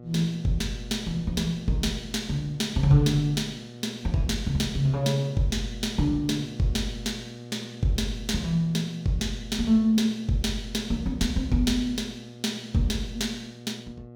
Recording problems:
electrical hum; 60 Hz, harmonics up to 840 Hz, SNR 17 dB

